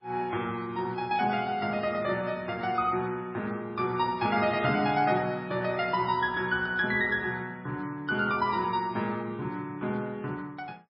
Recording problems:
lossy compression; MP3, log-spectral distance 2 dB, nothing above 4.8 kHz

